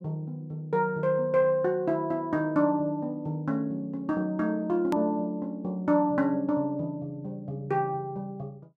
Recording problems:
hard cut with a click; at 5 s

